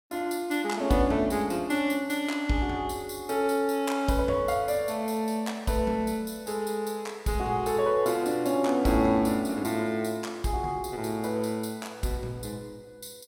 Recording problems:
none

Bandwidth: 16.5 kHz